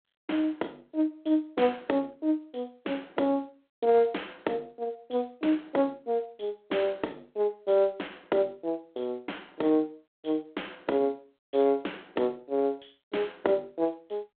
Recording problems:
telephone audio; 240 Hz to 3.7 kHz, G.726

